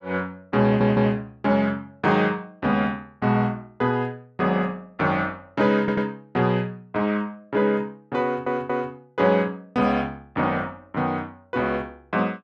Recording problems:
stutter; at 0.5 s, at 6 s and at 8 s

